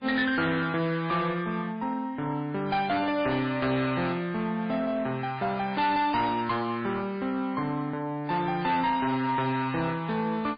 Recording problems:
lossy compression; MP3, log-spectral distance 3 dB, nothing above 4.8 kHz
distorted audio; hard clipping, uneven, signal-to-distortion ratio 11 dB

